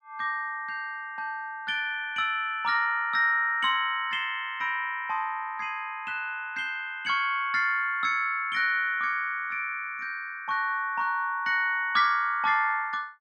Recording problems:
none

